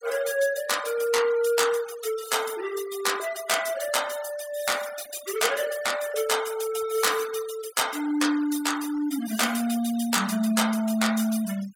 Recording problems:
noise reduction artefacts; signal-to-artefact ratio 15 dB

